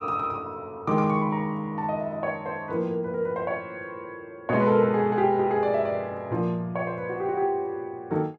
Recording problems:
none

